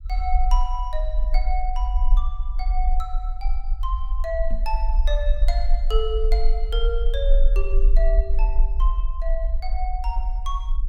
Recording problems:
rumble; below 42 Hz, strongest tone 20 Hz, SNR -7 dB
microphone thump; at 4.5 s; peak -1 dB vs average level

